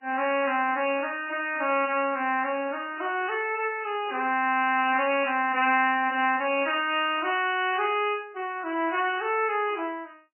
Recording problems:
lossy compression; MP3, log-spectral distance 5 dB, nothing above 2.6 kHz

